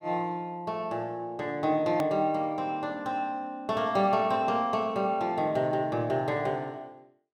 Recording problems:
click at an edit; at 2 s

